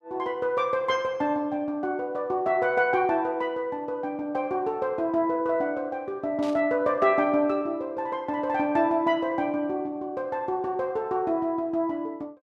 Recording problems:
static burst; at 6.5 s; peak -13 dB vs average level

